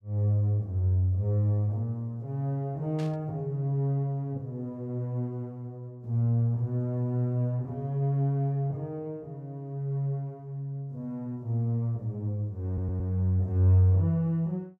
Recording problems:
burst of static; at 3 s; peak -14 dB vs average level
stutter; at 13 s

